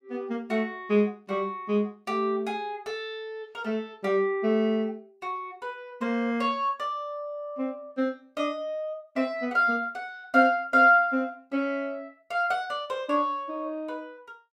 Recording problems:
none

